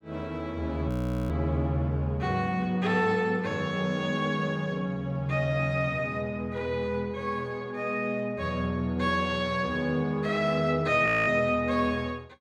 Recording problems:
audio freezing; at 1 s and at 11 s

